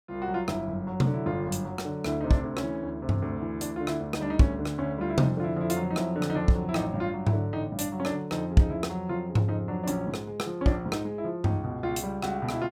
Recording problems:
none

